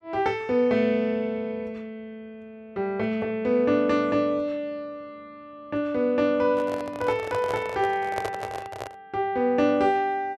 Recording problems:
microphone handling noise; from 6.5 to 9 s; peak -2 dB vs average level

